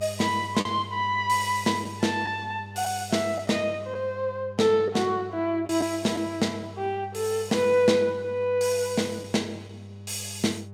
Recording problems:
hum; 50 Hz, harmonics up to 800 Hz, SNR 16 dB
lost packets; 1.6% of the sound replaced, filled with the last packet

